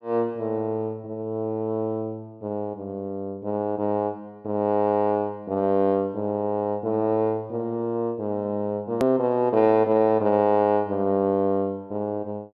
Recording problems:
click at an edit; at 9 s

